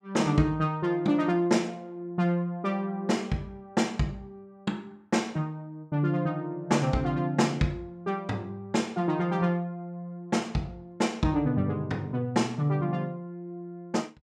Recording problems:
none

